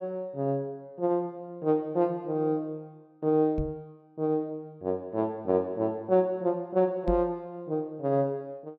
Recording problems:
microphone thump; at 3.5 s and at 7 s; peak 0 dB vs average level

